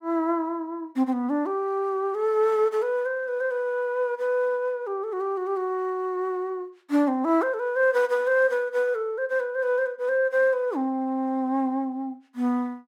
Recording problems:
none

